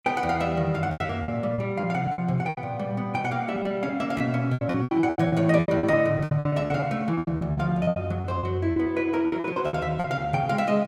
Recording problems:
packet loss; 17% of the sound replaced, filled with repeated pitch periods

